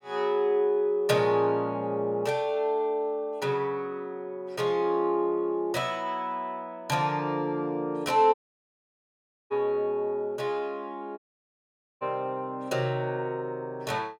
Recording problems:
audio cutting out; at 8.5 s for 1 s and at 11 s for 1 s

